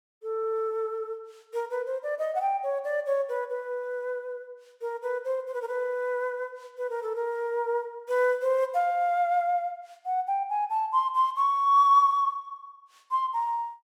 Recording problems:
none

